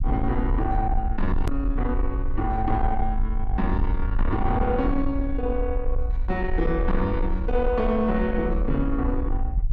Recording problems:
distorted audio; soft clipping, signal-to-distortion ratio 11 dB
rumble; below 56 Hz, SNR 2 dB
click at an edit; at 1.5 s

